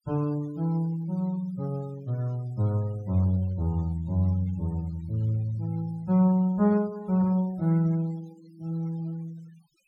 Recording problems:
noise reduction artefacts; signal-to-artefact ratio 27 dB

